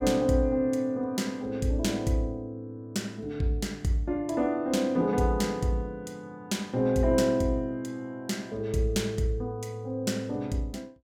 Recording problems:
none

